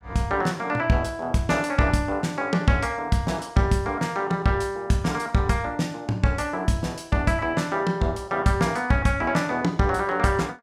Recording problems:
none

